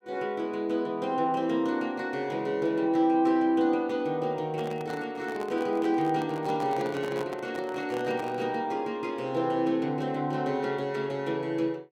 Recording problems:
microphone handling noise; from 4.5 to 8.5 s; peak -7 dB vs average level

